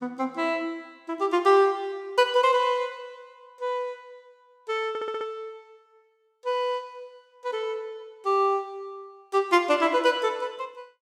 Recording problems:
stutter; at 5 s

